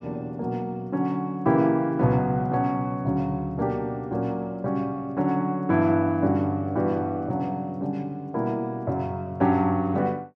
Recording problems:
none

